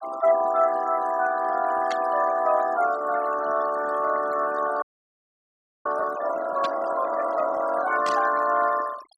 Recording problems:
noise reduction artefacts; signal-to-artefact ratio 15 dB
static burst; at 2 s, at 6.5 s and at 8 s; peak -6 dB vs average level
frozen audio; at 5 s for 1 s

